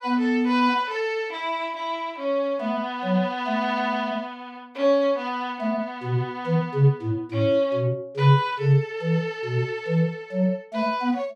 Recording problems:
none

